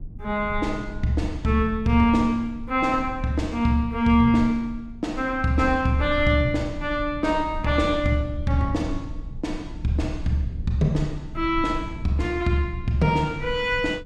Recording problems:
low-frequency rumble; below 82 Hz, SNR 13 dB

